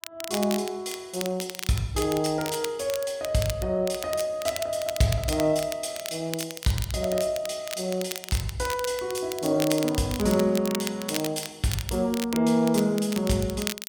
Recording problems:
crackling; vinyl, SNR 10 dB

